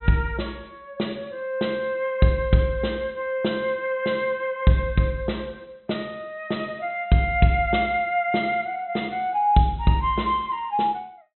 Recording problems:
treble cut off; nothing above 4 kHz

